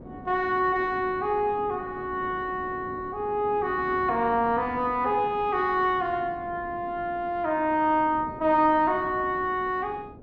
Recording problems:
wind on the microphone; below 400 Hz, SNR 17 dB

